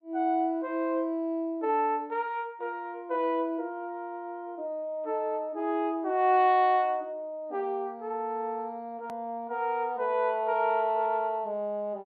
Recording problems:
treble cut off; nothing above 4.8 kHz
edit click; at 9 s

